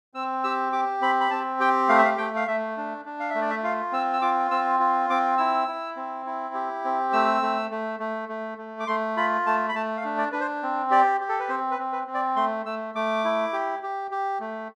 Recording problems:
none

